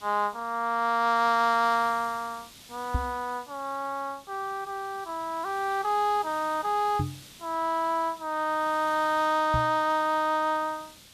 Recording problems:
background hiss; SNR 21 dB
knock on the microphone; at 3 s, at 7 s and at 9.5 s; peak +2 dB vs average level

